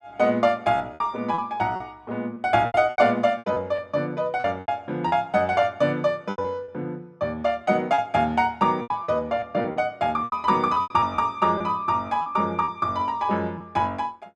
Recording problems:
packet loss; 10% of the sound replaced, filled with repeated pitch periods

